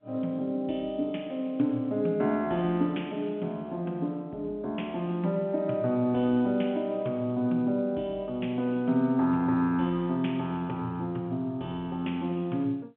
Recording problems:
telephone audio; 170 Hz to 3.4 kHz, G.711

